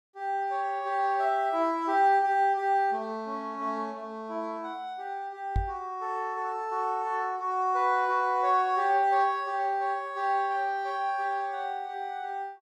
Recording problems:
knock on the microphone; at 5.5 s; peak +2 dB vs average level

